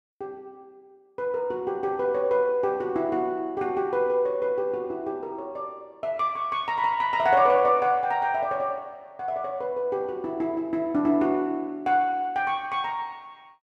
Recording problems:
none

